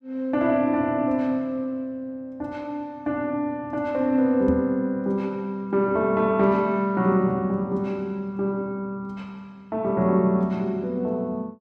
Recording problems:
microphone bump; at 4.5 s; peak +1 dB vs average level

